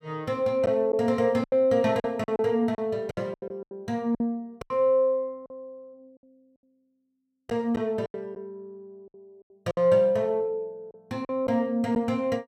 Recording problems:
lost packets; 10% of the sound replaced, filled with silence

